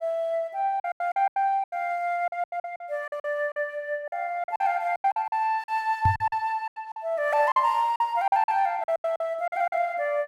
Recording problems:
lost packets; 15% of the sound replaced, filled with silence
microphone thump; at 6 s; peak +4 dB vs average level

